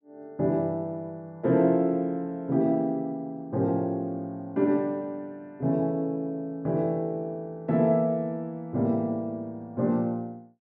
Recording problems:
none

